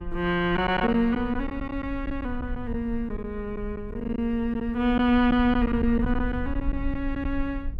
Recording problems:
low-frequency rumble; below 66 Hz, SNR 10 dB
packet loss; 7% of the sound replaced, filled with silence

